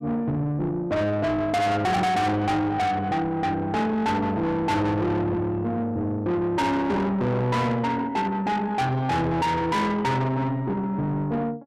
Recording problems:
distortion; soft clipping, signal-to-distortion ratio 6 dB

